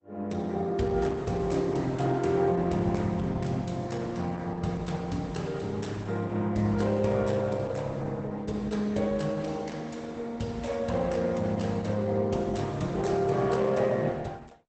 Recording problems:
lossy codec; Opus, log-spectral distance 3 dB, nothing above 8.2 kHz

